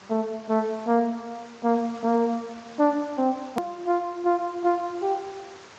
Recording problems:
lossy compression; Speex, log-spectral distance 5 dB, nothing above 13.1 kHz
hiss; SNR 21 dB
click at an edit; at 3.5 s

